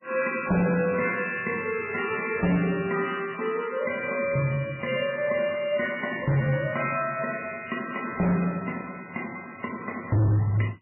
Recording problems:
lossy codec; MP3, log-spectral distance 9 dB, nothing above 2.4 kHz
distortion; hard clipping, signal-to-distortion ratio 10 dB

